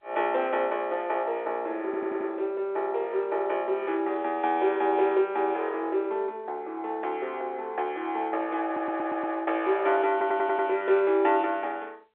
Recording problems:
phone line; 320 Hz to 3.6 kHz, G.711
audio stuttering; at 2 s, at 8.5 s and at 10 s

